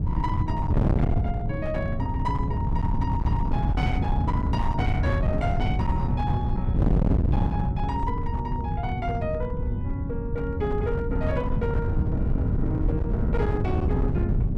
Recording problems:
distorted audio; hard clipping, signal-to-distortion ratio 7 dB
wind noise; below 150 Hz, SNR -4 dB

